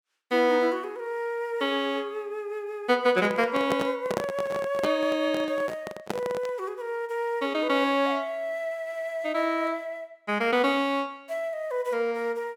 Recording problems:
handling noise; from 3 to 6.5 s; peak +2 dB vs average level

